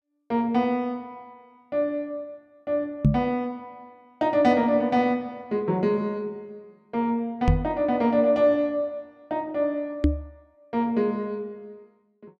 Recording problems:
microphone thump; at 3 s, at 7.5 s and at 10 s; peak +9 dB vs average level

